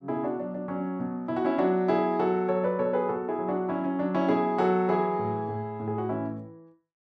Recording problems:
none

